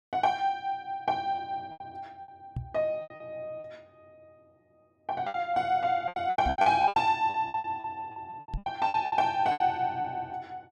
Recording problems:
lost packets; 16% of the sound replaced, filled with repeated pitch periods
microphone thump; at 2.5 s, at 6.5 s and at 8.5 s; peak -1 dB vs average level

